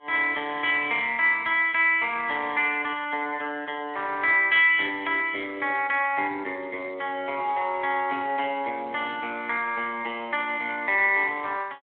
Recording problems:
telephone audio; 240 Hz to 3.5 kHz, Speex

